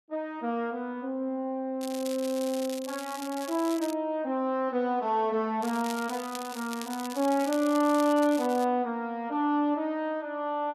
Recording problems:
crackle; from 2 to 4 s and from 5.5 to 8.5 s; loose cable, SNR 14 dB

